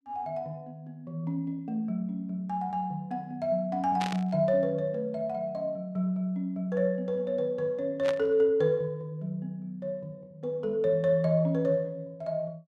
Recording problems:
static burst; at 4 s and at 8 s; peak -3 dB vs average level

